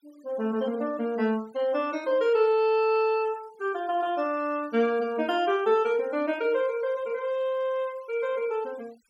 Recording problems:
denoising artefacts; signal-to-artefact ratio 27 dB

